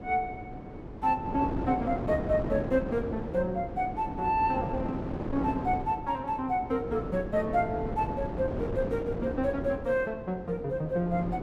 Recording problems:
wind noise; below 450 Hz, SNR 6 dB

